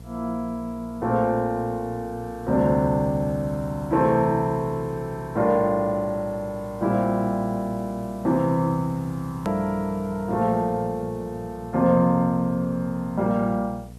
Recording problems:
hum; 60 Hz, harmonics up to 720 Hz, SNR 19 dB
hiss; slope -1 dB per octave, SNR 30 dB
hard cut with a click; at 9.5 s

